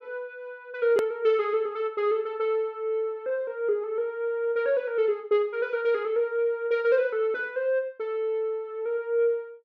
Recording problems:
hard cut with a click; at 1 s

